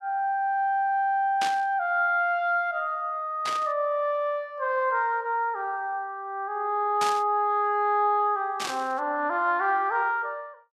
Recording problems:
burst of static; 4 times, first at 1.5 s; peak -1 dB vs average level

